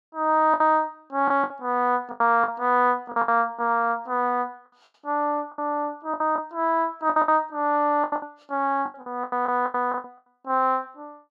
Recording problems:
lost packets; 12% of the sound replaced, filled with the last packet

